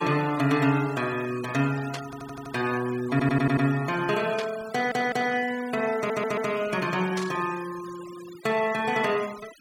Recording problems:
denoising artefacts; signal-to-artefact ratio 17 dB
static burst; at 2 s, at 4.5 s and at 7 s; peak -5 dB vs average level
stutter; 4 times, first at 2 s

